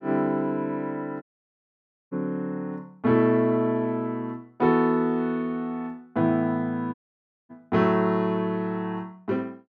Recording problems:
audio cutting out; at 1 s for 1 s and at 7 s for 0.5 s

